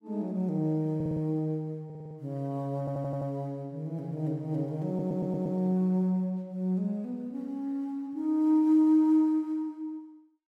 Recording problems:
stutter; 4 times, first at 1 s

